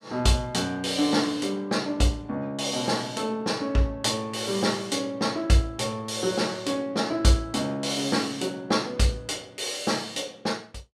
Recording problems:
none

